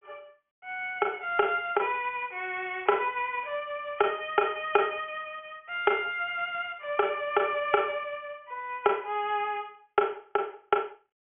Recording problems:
phone line; 300 Hz to 3.3 kHz, G.726

